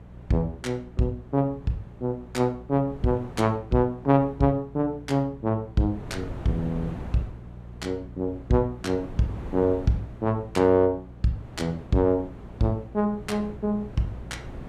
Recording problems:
hum; 60 Hz, harmonics up to 600 Hz, SNR 19 dB
wind on the microphone; below 400 Hz, SNR 17 dB

